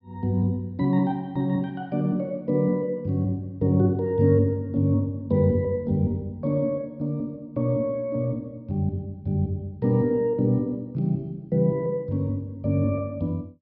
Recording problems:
low-pass filter; nothing above 5.5 kHz

